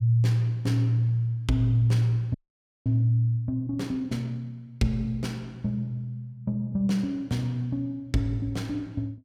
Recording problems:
frozen audio; at 2.5 s for 0.5 s

